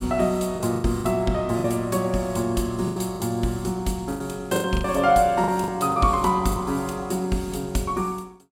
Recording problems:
packet loss; 9% of the sound replaced, filled with the last packet

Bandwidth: 16.5 kHz